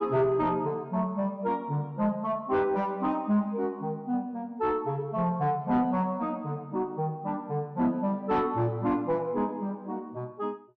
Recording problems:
distortion; soft clipping, signal-to-distortion ratio 12 dB

